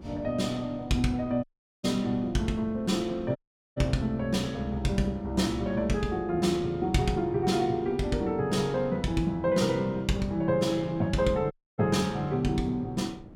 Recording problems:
wind noise; below 310 Hz, SNR 20 dB
audio cutting out; at 1.5 s, at 3.5 s and at 12 s

